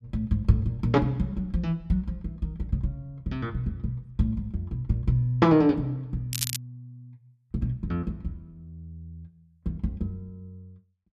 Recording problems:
crackle; at 6.5 s; loose cable, SNR 4 dB

